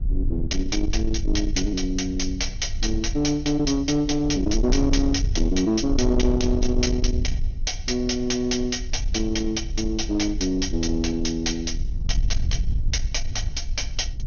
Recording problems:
low-pass filter; nothing above 6.4 kHz
distortion; soft clipping, signal-to-distortion ratio 12 dB
low-frequency rumble; below 64 Hz, SNR 5 dB

